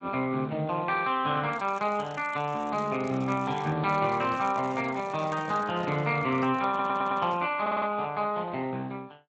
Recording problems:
lossy compression; Speex, log-spectral distance 4 dB
crackling; from 1.5 to 3.5 s and from 4 to 5.5 s; loose cable, SNR 25 dB
microphone handling noise; from 4 to 7.5 s; peak -7 dB vs average level
audio stuttering; at 6.5 s and at 7.5 s

